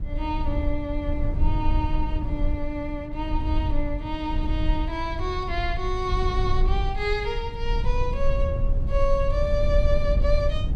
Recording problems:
low-frequency rumble; below 64 Hz, SNR -1 dB

